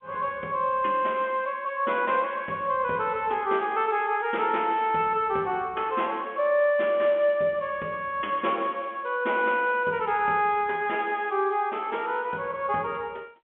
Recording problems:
telephone audio; 260 Hz to 3.4 kHz, G.711

